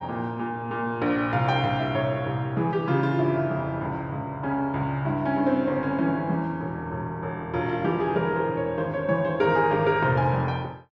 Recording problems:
none

